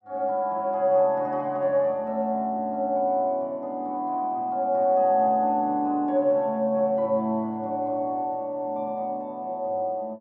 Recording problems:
none

